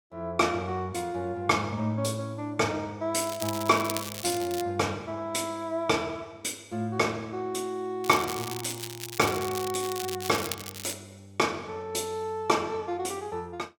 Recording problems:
crackling; from 3 to 4.5 s and from 8 to 11 s; loose cable, SNR 8 dB

